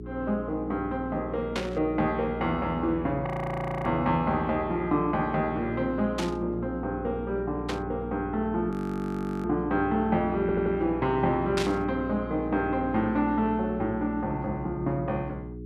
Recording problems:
hum; 60 Hz, harmonics up to 420 Hz, SNR 10 dB
burst of static; 4 times, first at 1.5 s; peak +1 dB vs average level
audio freezing; at 3.5 s for 0.5 s and at 8.5 s for 0.5 s
audio stuttering; at 10 s

